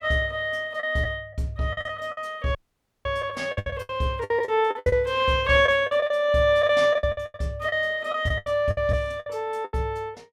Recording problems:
lost packets; 14% of the sound replaced, filled with the last packet
dropout; at 2.5 s for 0.5 s

